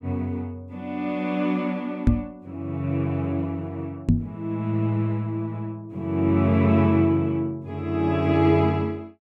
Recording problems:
microphone thump; at 2 s and at 4 s; peak +9 dB vs average level

